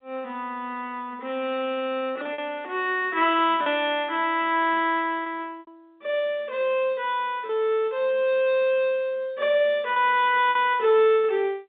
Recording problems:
phone line; 190 Hz to 3.8 kHz, G.711
lost packets; 3% of the sound replaced, filled with repeated pitch periods

